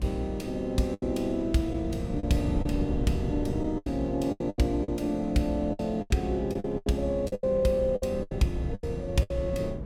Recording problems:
wind noise; below 190 Hz, SNR 8 dB
lost packets; 12% of the sound replaced, filled with the last packet

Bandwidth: 17.5 kHz